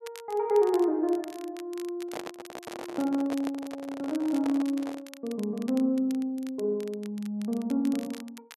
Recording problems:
crackle; vinyl, SNR 20 dB
handling noise; from 2 to 5 s; peak -3 dB vs average level

